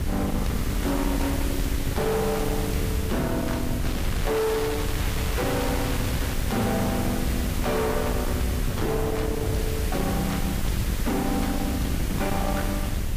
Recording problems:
lossy compression; Vorbis, log-spectral distance 5 dB, nothing above 16.1 kHz
distorted audio; soft clipping, signal-to-distortion ratio 7 dB
hiss; SNR 9 dB
low-frequency rumble; below 200 Hz, SNR 2 dB
crackle; from 4 to 6.5 s; loose cable, SNR 10 dB

